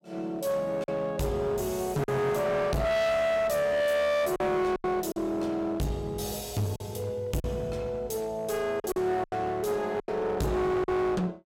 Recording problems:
distorted audio; hard clipping, uneven, signal-to-distortion ratio 6 dB
packet loss; 5% of the sound replaced, filled with silence

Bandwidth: 16.5 kHz